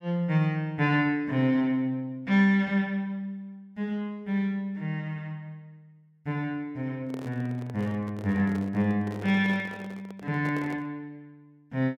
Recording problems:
handling noise; from 7 to 11 s; peak -8 dB vs average level

